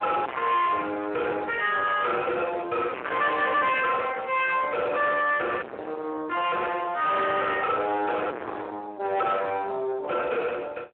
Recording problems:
telephone audio; 320 Hz to 3.4 kHz, Speex
distortion; soft clipping, signal-to-distortion ratio 2 dB

